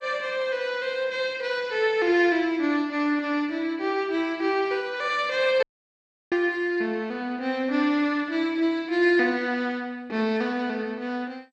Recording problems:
codec artefacts; MP2, log-spectral distance 2 dB
dropout; at 5.5 s for 0.5 s

